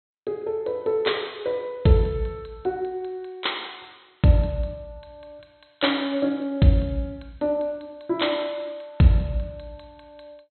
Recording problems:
treble cut off; nothing above 4.2 kHz

